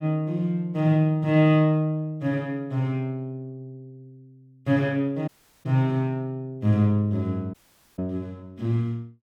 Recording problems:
dropout; at 5.5 s and at 7.5 s

